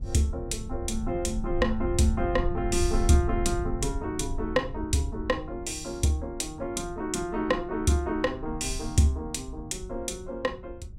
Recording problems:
rumble; below 76 Hz, SNR 8 dB

